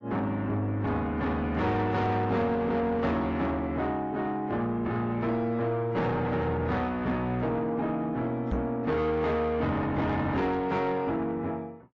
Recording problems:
lossy compression; AAC, log-spectral distance 2 dB, nothing above 7.3 kHz
distortion; soft clipping, signal-to-distortion ratio 11 dB
microphone bump; at 8.5 s; peak +1 dB vs average level

